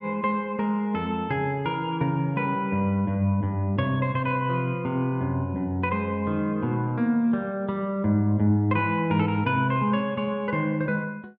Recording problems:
none

